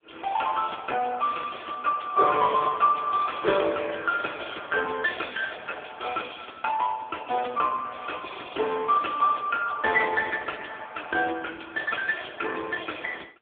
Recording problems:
telephone audio; 300 Hz to 3.4 kHz, AMR-NB

